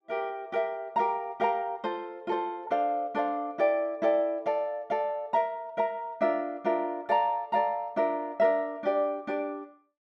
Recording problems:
none

